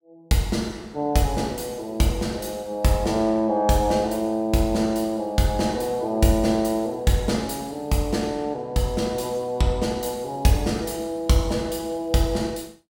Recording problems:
none

